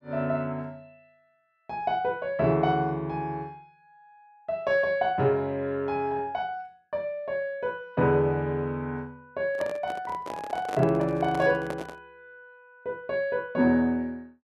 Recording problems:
handling noise; from 9.5 to 12 s; peak -3 dB vs average level

